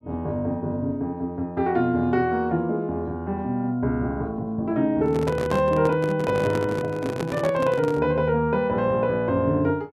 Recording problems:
microphone handling noise; from 5 to 8 s; peak -1 dB vs average level

